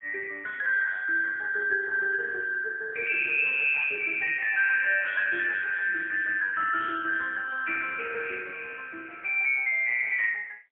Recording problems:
phone line; 880 Hz to 3.3 kHz, AMR-NB, then MP3

